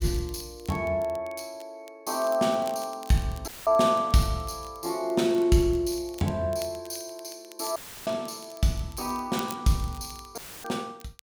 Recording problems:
crackling; vinyl, SNR 22 dB
dropout; at 3.5 s, at 8 s and at 10 s; filled with static

